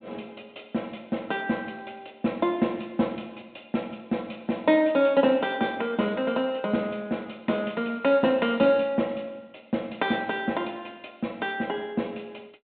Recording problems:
treble missing; nothing above 4 kHz

